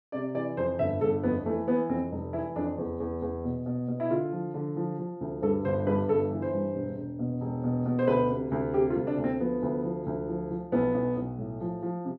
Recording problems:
none

